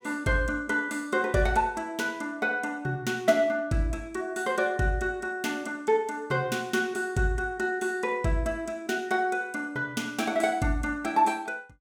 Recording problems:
none

